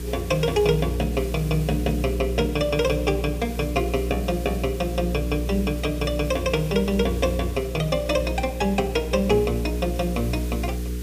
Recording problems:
electrical hum; 60 Hz, harmonics up to 480 Hz, SNR 5 dB
hiss; SNR 17 dB

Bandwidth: 15 kHz